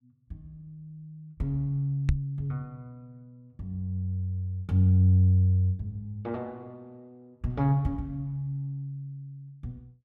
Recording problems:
microphone bump; at 2 s; peak +5 dB vs average level

